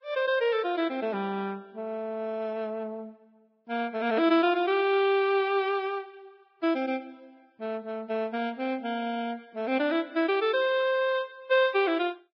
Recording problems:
codec artefacts; Vorbis, log-spectral distance 2 dB, nothing above 5 kHz

